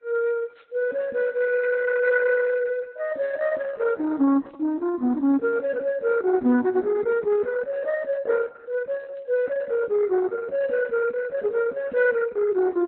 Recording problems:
lossy compression; Opus, then AAC, log-spectral distance 3 dB

